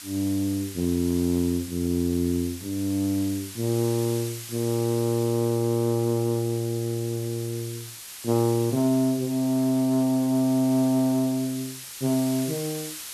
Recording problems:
background hiss; slope +3 dB per octave, SNR 13 dB

